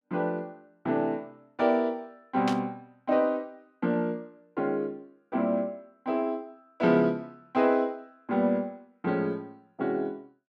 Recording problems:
burst of static; at 2.5 s; peak -1 dB vs average level

